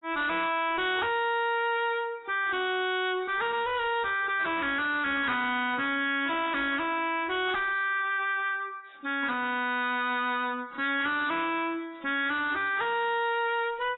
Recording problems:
lossy codec; AAC, log-spectral distance 5 dB, nothing above 3.4 kHz
distorted audio; soft clipping, signal-to-distortion ratio 6 dB

